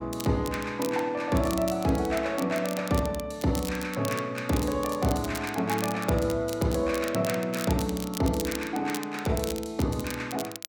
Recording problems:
crackling; vinyl, SNR 12 dB

